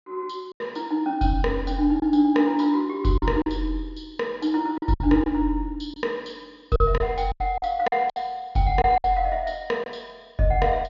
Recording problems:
treble cut off; nothing above 6.8 kHz
packet loss; 7% of the sound replaced, filled with silence

